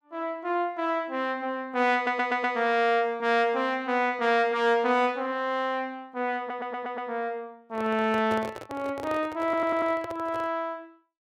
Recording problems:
stutter; at 2 s, at 6.5 s and at 9.5 s
handling noise; from 7.5 to 11 s; peak -6 dB vs average level

